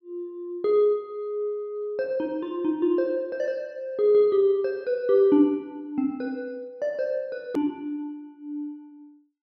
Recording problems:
hard cut with a click; at 7.5 s

